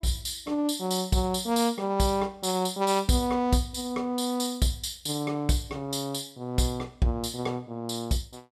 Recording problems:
none

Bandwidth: 14.5 kHz